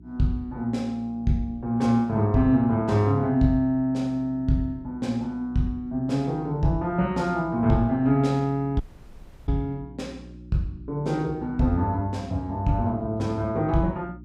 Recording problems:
hum; 60 Hz, harmonics up to 360 Hz, SNR 20 dB
audio cutting out; at 9 s for 0.5 s

